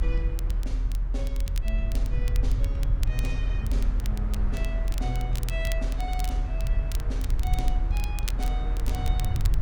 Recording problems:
low-frequency rumble; below 50 Hz, strongest tone 42 Hz, SNR -8 dB
wind on the microphone; below 710 Hz, SNR 6 dB
crackling; vinyl, SNR 7 dB

